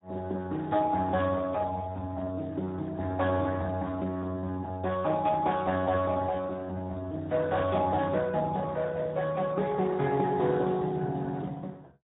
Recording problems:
treble missing; nothing above 3.8 kHz
lossy codec; Speex, log-spectral distance 3 dB

